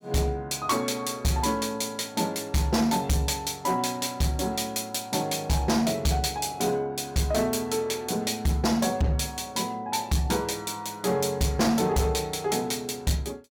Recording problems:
distorted audio; hard clipping, signal-to-distortion ratio 11 dB

